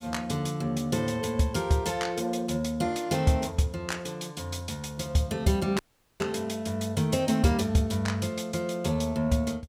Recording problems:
dropout; at 6 s

